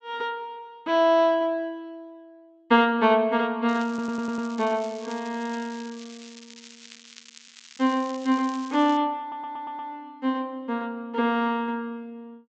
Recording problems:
treble cut off; nothing above 8 kHz
crackling; from 3.5 to 9 s; loose cable, SNR 21 dB
audio stuttering; at 4 s and at 9 s

